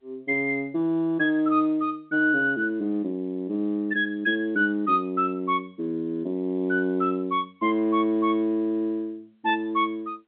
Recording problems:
phone line; 130 Hz to 3.7 kHz, G.711

